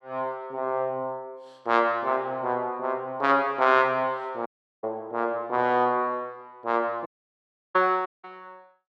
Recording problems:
dropout; at 4.5 s, at 7 s for 0.5 s and at 8 s

